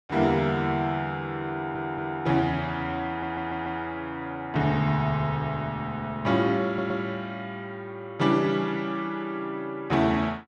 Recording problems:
stutter; at 1.5 s, at 3 s and at 6.5 s

